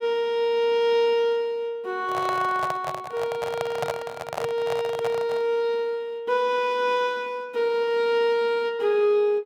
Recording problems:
handling noise; from 2 to 5.5 s; peak 0 dB vs average level

